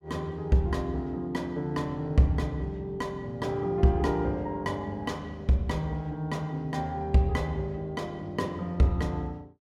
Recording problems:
none

